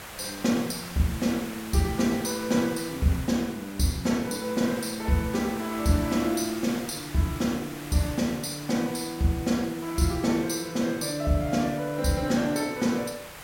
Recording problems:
hiss; SNR 13 dB

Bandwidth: 16.5 kHz